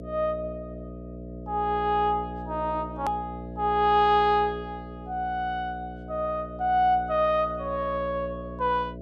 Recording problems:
hum; 60 Hz, harmonics up to 660 Hz, SNR 12 dB
edit click; at 3 s

